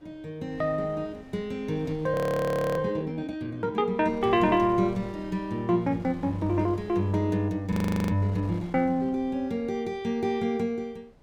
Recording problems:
wind noise; below 530 Hz, SNR 20 dB
frozen audio; at 2 s for 0.5 s and at 7.5 s

